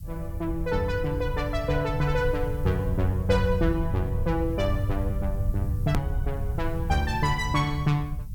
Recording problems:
background hiss; slope +5 dB per octave, SNR 27 dB
low-frequency rumble; below 100 Hz, SNR 4 dB
edit click; at 6 s

